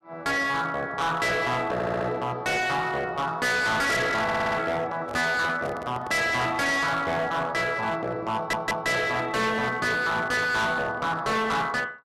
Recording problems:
distorted audio; hard clipping, signal-to-distortion ratio 6 dB
stutter; at 1.5 s, at 4 s and at 8.5 s
handling noise; from 5 to 6.5 s; peak -8 dB vs average level

